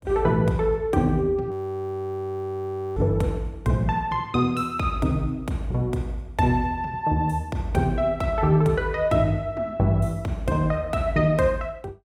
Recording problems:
audio freezing; at 1.5 s for 1.5 s

